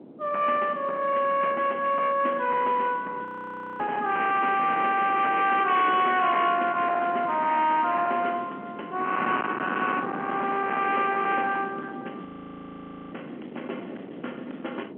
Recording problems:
telephone audio; 220 Hz to 3.2 kHz, G.711
distorted audio; soft clipping, signal-to-distortion ratio 8 dB
wind noise; below 1.4 kHz, SNR 13 dB
audio freezing; at 3.5 s for 0.5 s and at 12 s for 1 s

